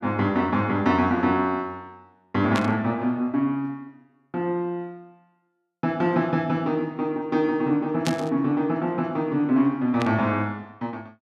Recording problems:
static burst; at 2.5 s, at 8 s and at 10 s; peak -1 dB vs average level

